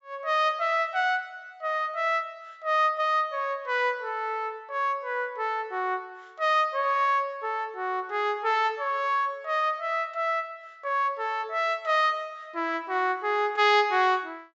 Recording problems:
treble missing; nothing above 8 kHz

